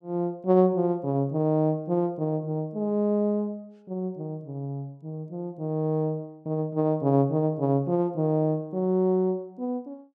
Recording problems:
none

